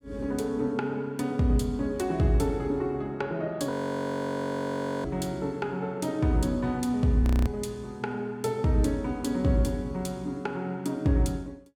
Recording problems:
frozen audio; at 3.5 s for 1.5 s and at 7 s

